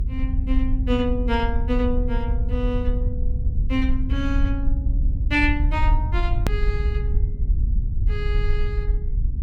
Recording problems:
rumble; below 66 Hz, SNR -3 dB
click at an edit; at 6.5 s

